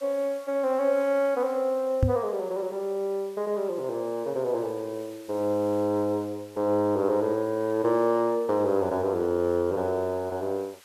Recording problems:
hiss; SNR 26 dB
microphone thump; at 2 s; peak +7 dB vs average level

